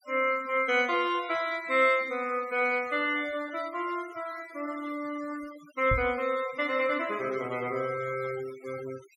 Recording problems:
noise reduction artefacts; signal-to-artefact ratio 19 dB
microphone thump; at 6 s; peak +2 dB vs average level

